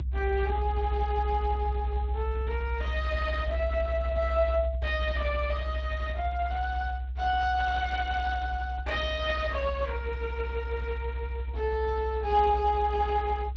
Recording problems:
lossy compression; Speex, log-spectral distance 3 dB
low-frequency rumble; below 66 Hz, strongest tone 64 Hz, SNR 4 dB

